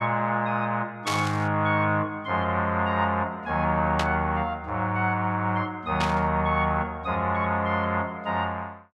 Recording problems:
static burst; at 1 s, at 4 s and at 6 s; peak 0 dB vs average level

